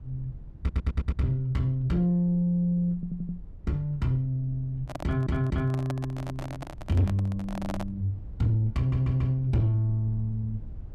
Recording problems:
distortion; soft clipping, signal-to-distortion ratio 11 dB
low-frequency rumble; below 80 Hz, SNR 18 dB
audio stuttering; 4 times, first at 0.5 s
microphone handling noise; from 5 to 8 s; peak -4 dB vs average level

